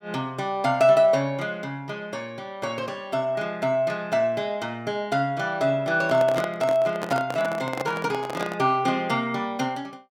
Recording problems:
handling noise; from 6 to 8.5 s; peak -1 dB vs average level

